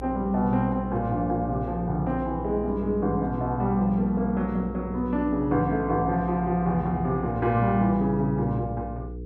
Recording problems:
hum; 60 Hz, harmonics up to 480 Hz, SNR 12 dB

